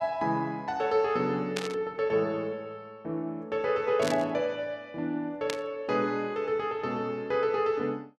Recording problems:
burst of static; at 1.5 s, at 4 s and at 5.5 s; peak +1 dB vs average level

